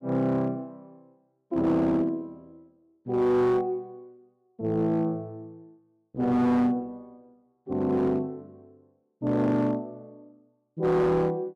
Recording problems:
distortion; hard clipping, signal-to-distortion ratio 12 dB

